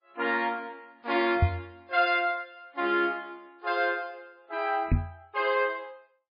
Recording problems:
lossy codec; MP3, log-spectral distance 2 dB
knock on the microphone; at 1.5 s and at 5 s; peak +9 dB vs average level

